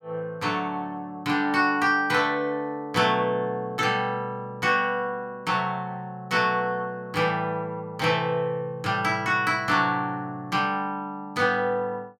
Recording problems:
none

